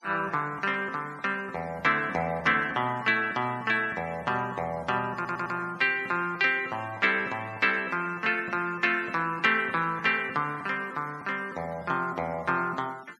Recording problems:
noise reduction artefacts; signal-to-artefact ratio 25 dB
audio stuttering; at 5 s

